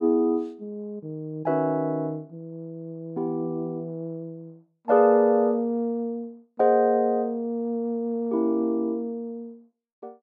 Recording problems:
none

